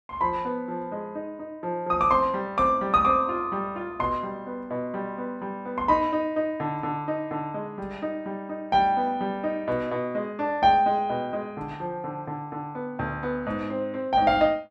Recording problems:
none

